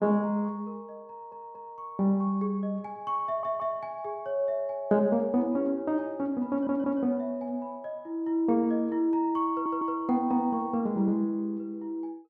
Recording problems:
stutter; 4 times, first at 1 s

